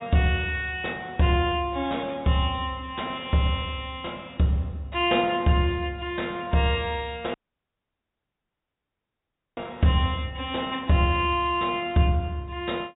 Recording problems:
treble missing; nothing above 4 kHz
dropout; at 7.5 s for 2 s

